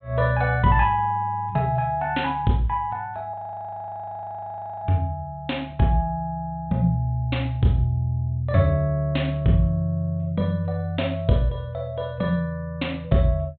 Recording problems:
treble missing; nothing above 4 kHz
audio freezing; at 3.5 s for 1.5 s

